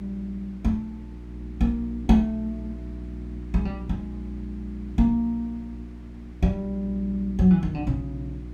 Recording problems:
hum; 60 Hz, harmonics up to 360 Hz, SNR 12 dB
wind noise; below 1.1 kHz, SNR 28 dB

